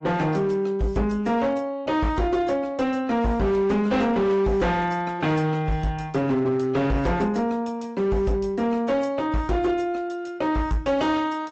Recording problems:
treble missing; nothing above 8 kHz
lossy compression; AAC, log-spectral distance 2 dB
distortion; hard clipping, signal-to-distortion ratio 11 dB

